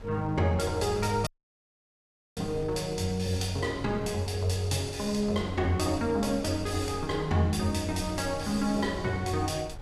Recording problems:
wind on the microphone; below 210 Hz, SNR 15 dB
dropout; at 1.5 s for 1 s

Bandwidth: 14.5 kHz